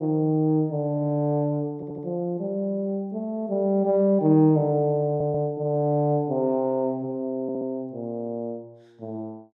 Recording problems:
stutter; at 2 s, at 5 s and at 7.5 s

